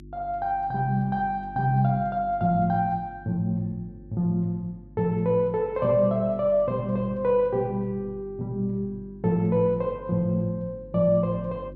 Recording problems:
hum; 50 Hz, harmonics up to 350 Hz, SNR 20 dB

